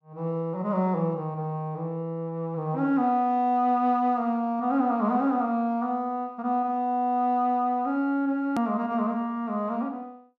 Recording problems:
click at an edit; at 8.5 s

